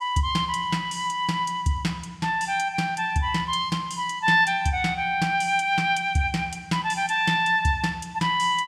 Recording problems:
none

